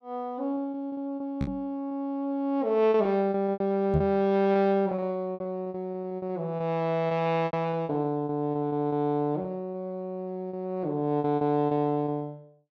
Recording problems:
packet loss; 14% of the sound replaced, filled with repeated pitch periods
microphone bump; at 1.5 s and at 4 s; peak +5 dB vs average level

